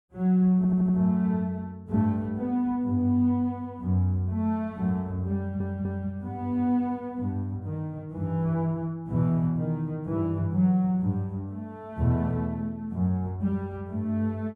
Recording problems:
stutter; at 0.5 s and at 5.5 s

